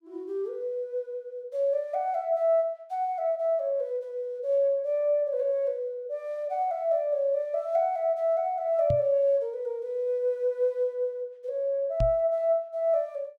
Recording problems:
knock on the microphone; at 9 s and at 12 s; peak +2 dB vs average level

